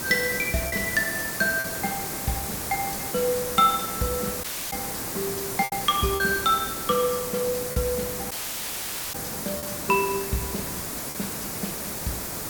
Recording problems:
hiss; SNR 3 dB
lost packets; 3% of the sound replaced, filled with repeated pitch periods
dropout; at 4.5 s and at 8.5 s for 1 s

